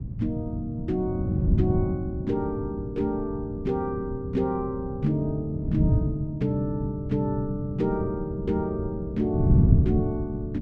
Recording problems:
wind noise; below 170 Hz, SNR 0 dB

